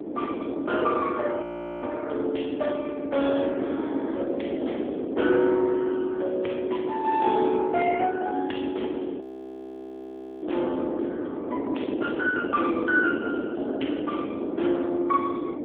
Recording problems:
phone line; 240 Hz to 3.4 kHz, AMR-NB
wind on the microphone; below 450 Hz, SNR 4 dB
frozen audio; at 1.5 s and at 9 s for 1 s

